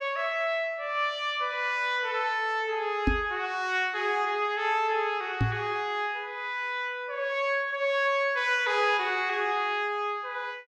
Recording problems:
knock on the microphone; at 3 s and at 5.5 s; peak +5 dB vs average level

